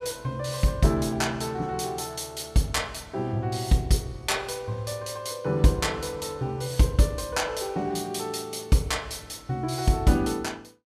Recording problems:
none

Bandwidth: 14.5 kHz